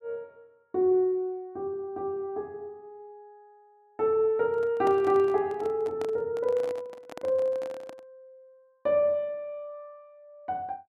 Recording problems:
handling noise; from 4.5 to 8 s; peak -7 dB vs average level

